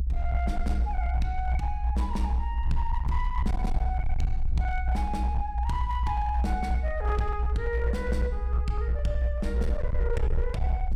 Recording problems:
distorted audio; hard clipping, signal-to-distortion ratio 10 dB
rumble; below 64 Hz, SNR -4 dB

